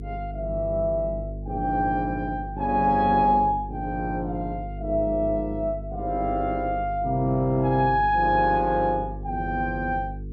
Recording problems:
hum; 50 Hz, harmonics up to 450 Hz, SNR 11 dB

